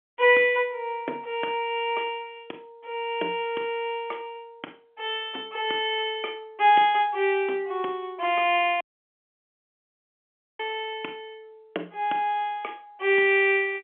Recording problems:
phone line; 260 Hz to 3.4 kHz, G.711
audio cutting out; at 9 s for 2 s

